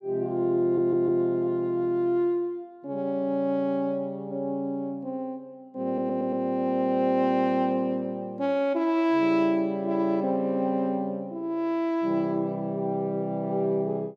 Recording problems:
stutter; at 0.5 s and at 6 s

